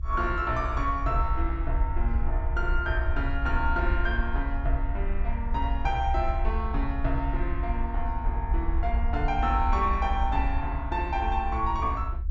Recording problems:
treble cut off; nothing above 8 kHz
low-frequency rumble; below 62 Hz, SNR 0 dB

